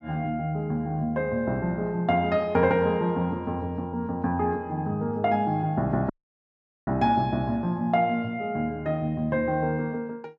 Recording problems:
dropout; at 6 s for 1 s

